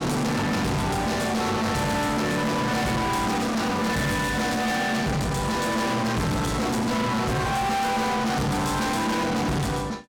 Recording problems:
distorted audio; soft clipping, signal-to-distortion ratio 6 dB
crackle; from 3.5 to 5 s; loose cable, SNR 25 dB

